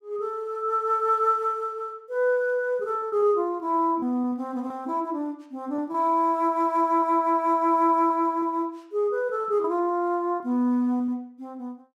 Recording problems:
packet loss; 3% of the sound replaced, filled with repeated pitch periods

